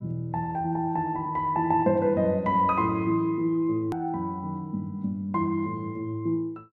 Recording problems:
edit click; at 4 s

